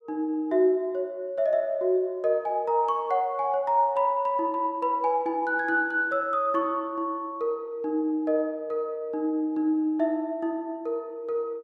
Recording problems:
none

